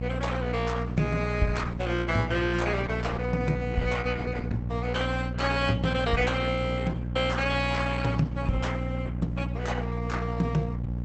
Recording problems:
lossy compression; Opus, log-spectral distance 4 dB, nothing above 8.2 kHz
hum; 60 Hz, harmonics up to 600 Hz, SNR 3 dB

